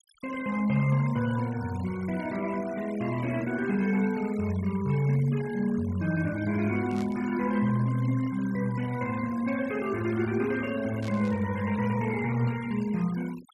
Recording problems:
denoising artefacts; signal-to-artefact ratio 18 dB
static burst; at 7 s and at 11 s; peak -14 dB vs average level

